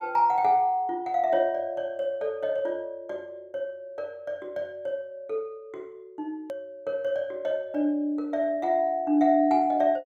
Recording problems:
edit click; at 6.5 s

